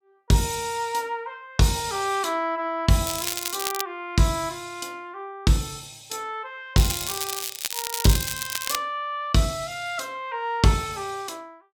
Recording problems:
crackling; at 3 s and from 7 to 9 s; loose cable, SNR 3 dB

